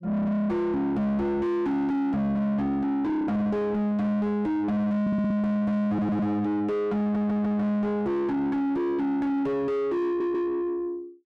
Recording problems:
distorted audio; soft clipping, signal-to-distortion ratio 6 dB
stutter; 4 times, first at 5 s

